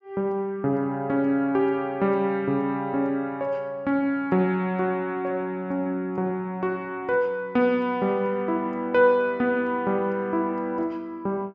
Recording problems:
treble missing; nothing above 8 kHz

